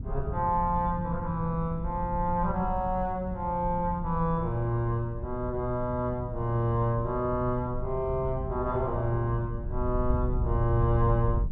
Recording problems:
rumble; below 140 Hz, SNR 11 dB
wind noise; below 86 Hz, SNR 8 dB

